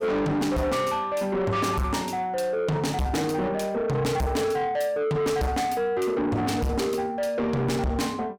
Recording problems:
distorted audio; soft clipping, signal-to-distortion ratio 6 dB

